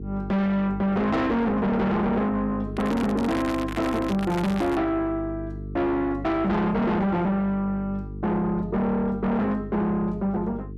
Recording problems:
distorted audio; soft clipping, signal-to-distortion ratio 6 dB
hum; 50 Hz, harmonics up to 450 Hz, SNR 12 dB
crackle; from 3 to 5 s; loose cable, SNR 13 dB

